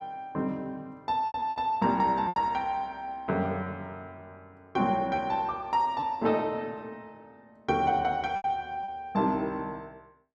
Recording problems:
lost packets; 4% of the sound replaced, filled with repeated pitch periods

